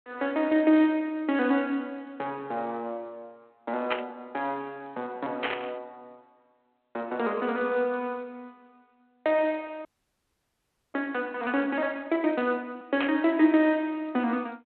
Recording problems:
phone line; 260 Hz to 3.4 kHz, G.726
burst of static; at 4 s, at 5.5 s and at 13 s; peak +3 dB vs average level
audio freezing; at 10 s for 1 s

